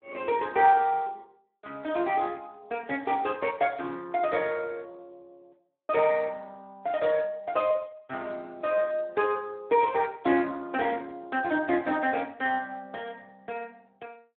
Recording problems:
phone line; 190 Hz to 3.3 kHz, Speex

